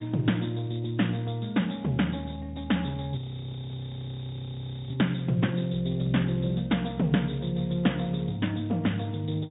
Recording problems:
treble cut off; nothing above 3.8 kHz
codec artefacts; Speex, log-spectral distance 8 dB
frozen audio; at 3 s for 1.5 s

